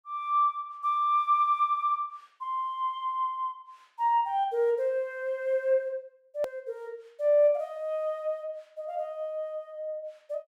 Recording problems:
hard cut with a click; at 6.5 s

